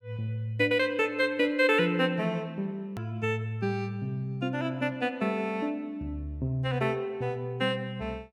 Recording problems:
edit click; at 3 s

